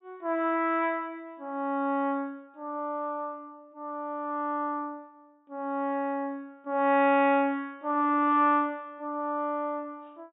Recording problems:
low-pass filter; nothing above 4 kHz

